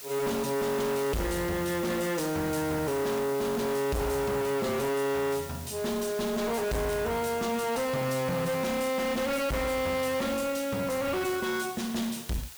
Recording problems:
distortion; hard clipping, uneven, signal-to-distortion ratio 6 dB
hiss; slope +1 dB per octave, SNR 13 dB
crackle; vinyl, SNR 30 dB

